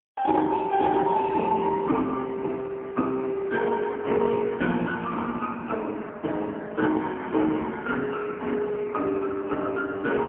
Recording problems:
telephone audio; 190 Hz to 3.4 kHz, AMR-NB, then MP3

